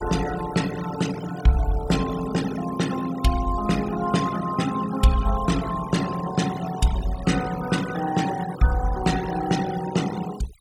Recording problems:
denoising artefacts; signal-to-artefact ratio 12 dB

